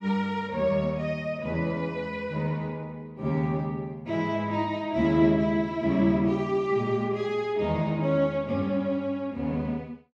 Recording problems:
none

